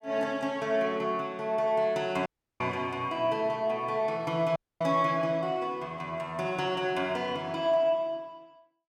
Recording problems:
audio cutting out; at 2.5 s and at 4.5 s

